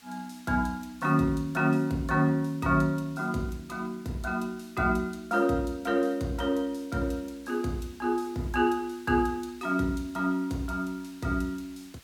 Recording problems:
background hiss; slope +1 dB per octave, SNR 26 dB

